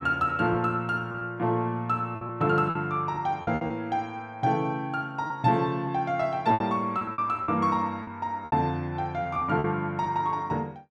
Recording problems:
lost packets; 8% of the sound replaced, filled with repeated pitch periods

